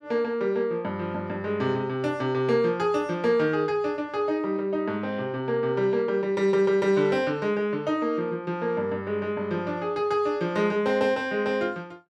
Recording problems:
none

